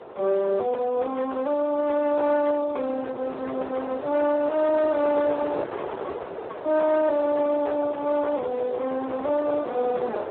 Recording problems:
telephone audio; 320 Hz to 2 kHz, Speex
distorted audio; hard clipping, uneven, signal-to-distortion ratio 12 dB
wind noise; below 880 Hz, SNR 11 dB

